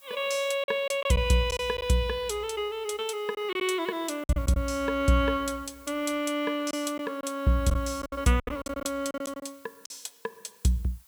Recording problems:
background hiss; SNR 27 dB
lost packets; 7% of the sound replaced, filled with silence

